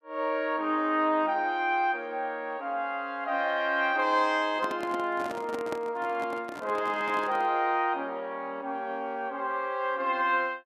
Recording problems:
microphone handling noise; from 4.5 to 7.5 s; peak -4 dB vs average level

